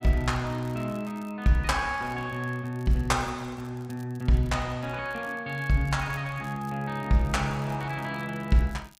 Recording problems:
crackle; vinyl, SNR 27 dB

